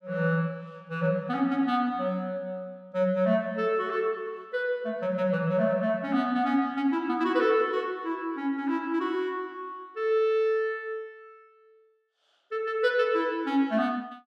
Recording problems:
none

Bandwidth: 13 kHz